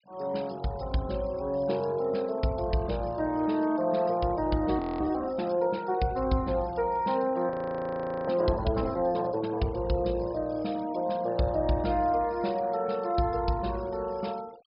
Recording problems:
treble missing; nothing above 5.5 kHz
noise reduction artefacts; signal-to-artefact ratio 24 dB
audio freezing; at 5 s and at 7.5 s for 1 s

